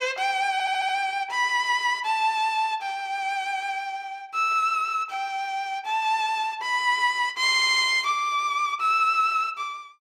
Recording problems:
audio stuttering; at 0.5 s and at 7.5 s

